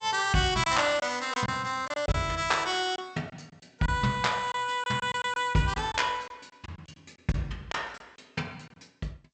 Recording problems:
lossy compression; G.722, log-spectral distance 4 dB, nothing above 8 kHz
lost packets; 7% of the sound replaced, filled with silence

